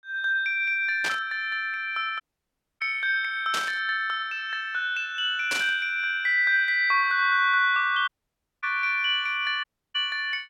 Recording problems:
burst of static; at 1 s, at 3.5 s and at 5.5 s; peak -1 dB vs average level
audio cutting out; at 2 s for 0.5 s, at 8 s for 0.5 s and at 9.5 s

